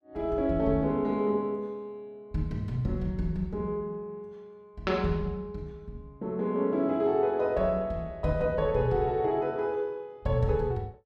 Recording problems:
none

